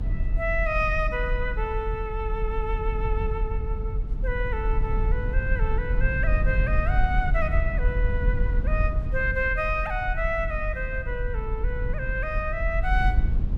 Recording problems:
low-frequency rumble; below 62 Hz, SNR -1 dB

